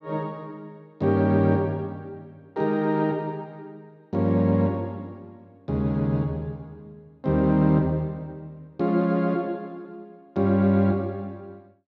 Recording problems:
none

